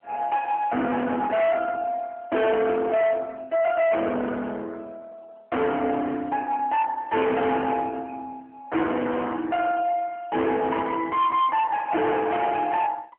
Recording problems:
phone line; 280 Hz to 3.4 kHz, AMR-NB
distorted audio; hard clipping, uneven, signal-to-distortion ratio 7 dB

